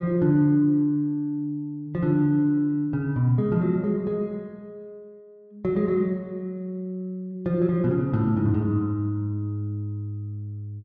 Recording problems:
none

